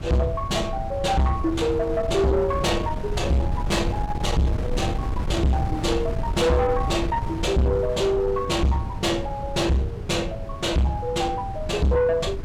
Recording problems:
distortion; soft clipping, signal-to-distortion ratio 7 dB
wind on the microphone; below 170 Hz, SNR 7 dB

